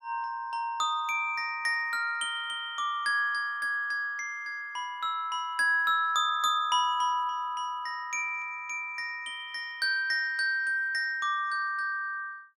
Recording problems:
none

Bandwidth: 16.5 kHz